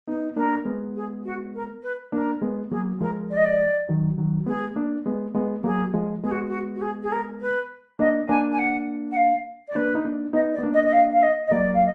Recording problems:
codec artefacts; Opus, then AAC, log-spectral distance 2 dB

